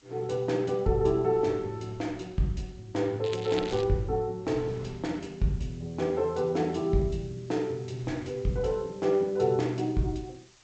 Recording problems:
lossy codec; G.722, log-spectral distance 4 dB, nothing above 7.3 kHz
background hiss; slope +1 dB per octave, SNR 29 dB
wind noise; below 480 Hz, SNR 20 dB
crackling; at 3 s; loose cable, SNR 13 dB

